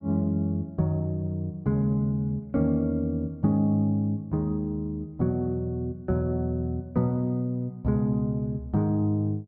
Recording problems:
none

